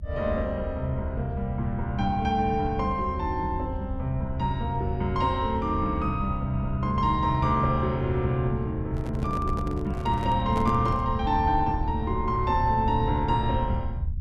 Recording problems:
rumble; below 80 Hz, SNR 7 dB
microphone handling noise; from 9 to 11 s; peak -4 dB vs average level

